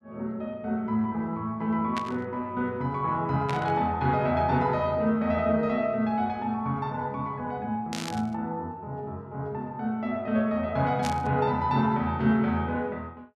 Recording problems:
burst of static; 4 times, first at 2 s; peak -2 dB vs average level

